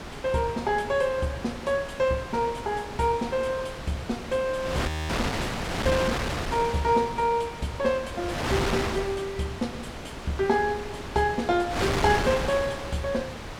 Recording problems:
wind noise; below 2.2 kHz, SNR 5 dB
audio freezing; at 5 s

